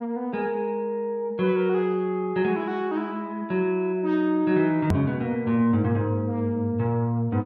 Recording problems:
hard cut with a click; at 5 s

